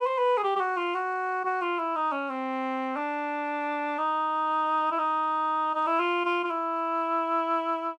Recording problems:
none

